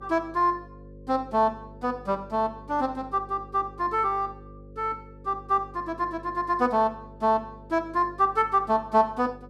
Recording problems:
mains hum; 50 Hz, harmonics up to 550 Hz, SNR 20 dB

